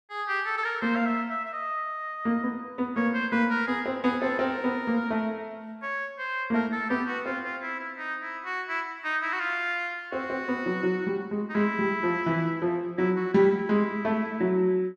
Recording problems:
none

